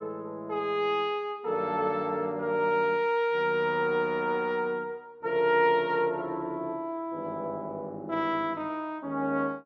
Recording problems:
none

